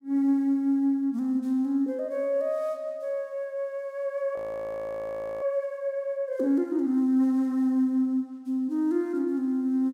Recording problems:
frozen audio; at 4.5 s for 1 s

